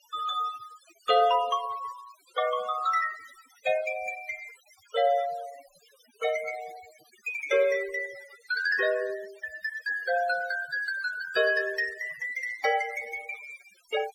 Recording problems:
denoising artefacts; signal-to-artefact ratio 17 dB

